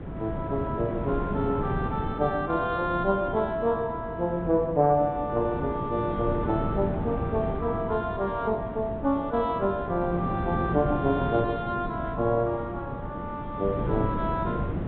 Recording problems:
treble missing; nothing above 4 kHz
wind noise; below 340 Hz, SNR 6 dB

